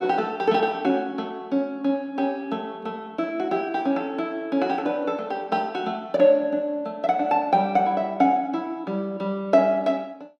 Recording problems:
none

